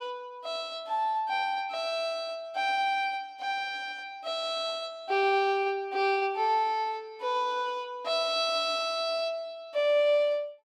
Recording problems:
none

